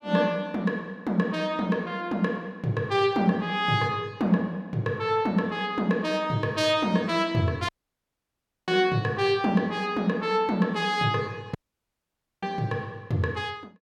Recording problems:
dropout; at 7.5 s for 1 s and at 12 s for 1 s

